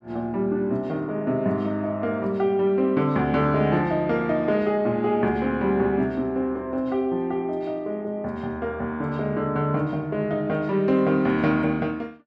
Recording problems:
none

